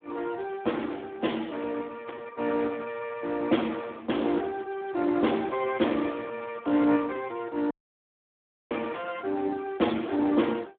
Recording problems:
telephone audio; 190 Hz to 3.4 kHz, Speex
dropout; at 7.5 s for 1 s

